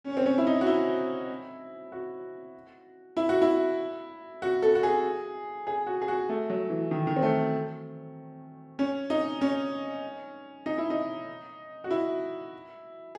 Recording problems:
none

